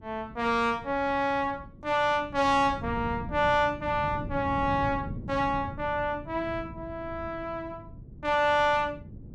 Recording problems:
wind on the microphone; below 210 Hz, SNR 13 dB

